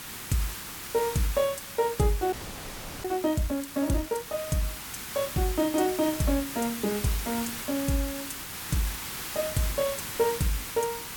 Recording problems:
background hiss; SNR 6 dB
frozen audio; at 2.5 s for 0.5 s

